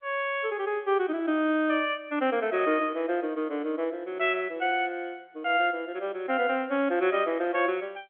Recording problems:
phone line; 240 Hz to 3.4 kHz, G.711

